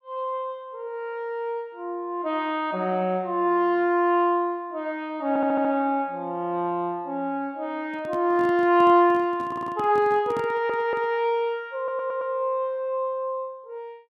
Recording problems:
stutter; 4 times, first at 5.5 s
handling noise; from 8 to 11 s; peak -7 dB vs average level

